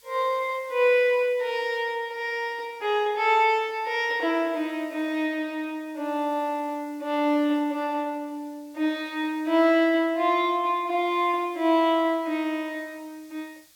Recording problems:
hiss; slope +3 dB per octave, SNR 30 dB

